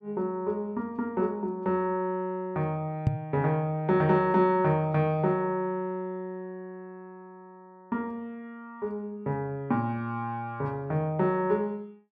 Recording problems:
microphone bump; at 3 s; peak +9 dB vs average level

